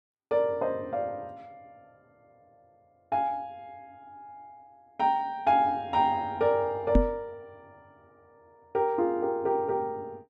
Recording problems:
microphone thump; at 7 s; peak +9 dB vs average level

